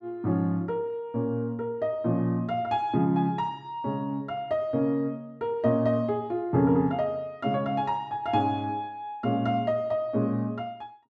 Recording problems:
none

